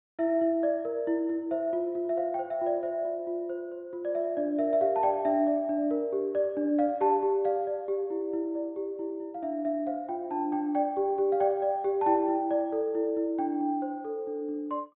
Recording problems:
low-pass filter; nothing above 4 kHz

